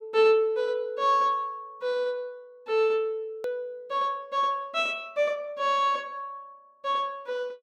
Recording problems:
click at an edit; at 3.5 s

